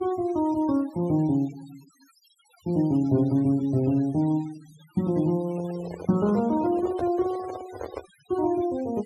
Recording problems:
noise reduction artefacts; signal-to-artefact ratio 22 dB
handling noise; from 5.5 to 8 s; peak -5 dB vs average level

